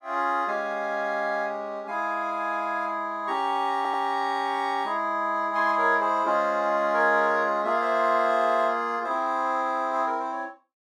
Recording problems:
audio stuttering; at 4 s

